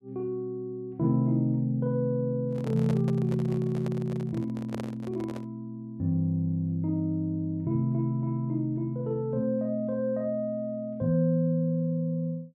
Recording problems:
microphone handling noise; from 2.5 to 5.5 s; peak -5 dB vs average level

